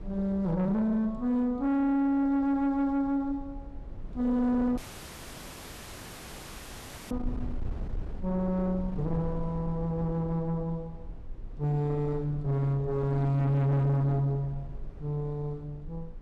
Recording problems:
distortion; soft clipping, signal-to-distortion ratio 6 dB
rumble; below 110 Hz, SNR 14 dB
dropout; at 5 s for 2.5 s

